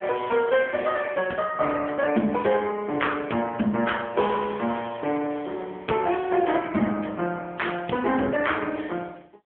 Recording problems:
telephone audio; 150 Hz to 3.4 kHz, AMR-NB

